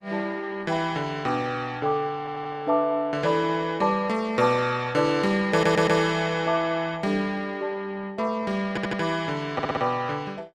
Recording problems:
lossy codec; Opus, log-spectral distance 3 dB, nothing above 15.6 kHz
stutter; 4 times, first at 2 s

